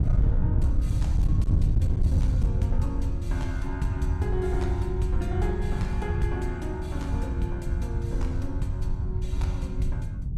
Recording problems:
distortion; hard clipping, signal-to-distortion ratio 12 dB
wind on the microphone; below 100 Hz, SNR -6 dB

